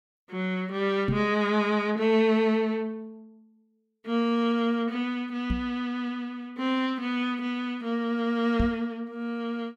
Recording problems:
microphone thump; at 1 s, at 5.5 s and at 8.5 s; peak +3 dB vs average level

